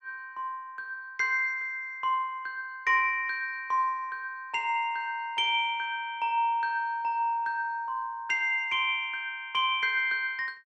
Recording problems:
none

